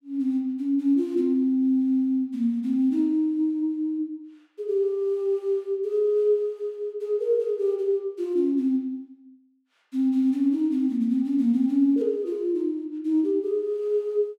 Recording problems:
none

